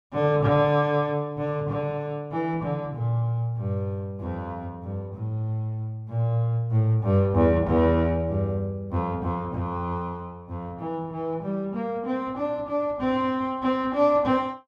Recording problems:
none

